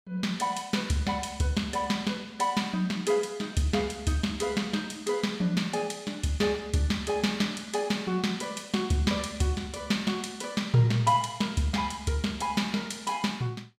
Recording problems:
none

